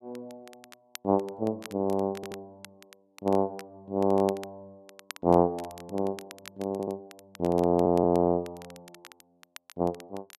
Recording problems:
crackle; vinyl, SNR 22 dB
stutter; at 2 s, at 6.5 s and at 7.5 s

